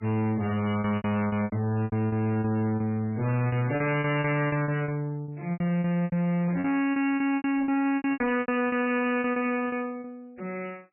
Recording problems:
codec artefacts; MP3, log-spectral distance 3 dB, nothing above 2.4 kHz
distortion; soft clipping, signal-to-distortion ratio 6 dB
lost packets; 16% of the sound replaced, filled with repeated pitch periods

